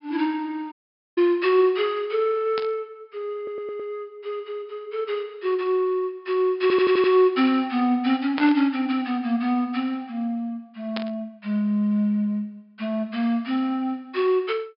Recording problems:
low-pass filter; nothing above 5.5 kHz
dropout; at 0.5 s
static burst; at 2.5 s, at 8.5 s and at 11 s; peak -2 dB vs average level
stutter; at 3.5 s and at 6.5 s

